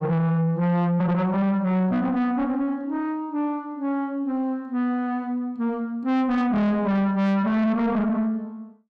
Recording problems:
distortion; soft clipping, signal-to-distortion ratio 6 dB

